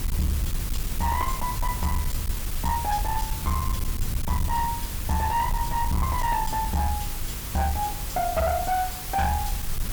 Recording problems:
distorted audio; hard clipping, signal-to-distortion ratio 11 dB
hum; 50 Hz, harmonics up to 550 Hz, SNR 15 dB
background hiss; slope -1 dB per octave, SNR 6 dB
rumble; below 78 Hz, SNR 6 dB

